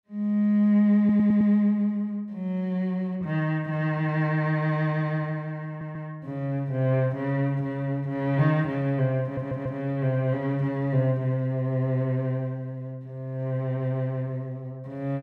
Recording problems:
stutter; at 1 s, at 5.5 s and at 9 s

